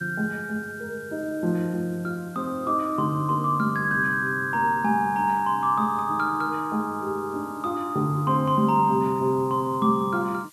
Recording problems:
hiss; SNR 27 dB

